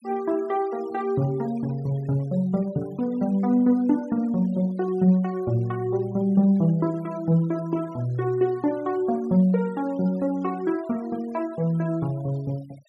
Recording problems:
denoising artefacts; signal-to-artefact ratio 26 dB

